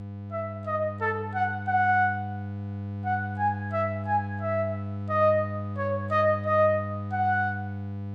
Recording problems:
electrical hum; 50 Hz, harmonics up to 800 Hz, SNR 8 dB

